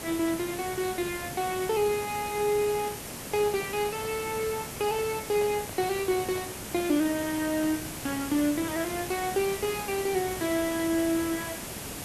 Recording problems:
hiss; slope -3 dB per octave, SNR 7 dB
handling noise; from 3 to 7 s; peak -11 dB vs average level

